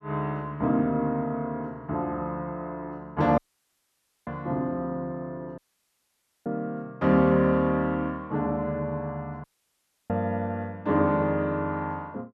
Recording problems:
dropout; at 3.5 s for 1 s, at 5.5 s for 1 s and at 9.5 s for 0.5 s

